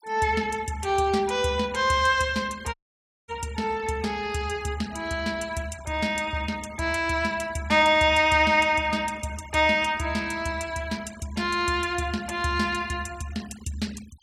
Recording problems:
denoising artefacts; signal-to-artefact ratio 22 dB
audio cutting out; at 2.5 s for 0.5 s

